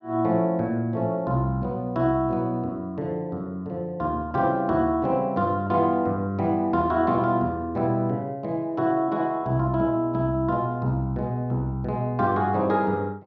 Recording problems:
none

